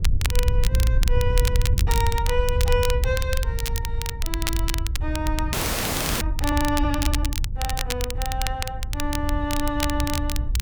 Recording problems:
wind on the microphone; below 80 Hz, SNR -3 dB
crackle; vinyl, SNR 3 dB
frozen audio; at 5.5 s for 0.5 s

